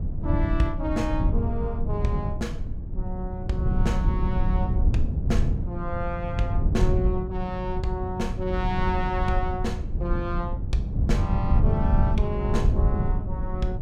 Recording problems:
low-frequency rumble; below 110 Hz, SNR -3 dB

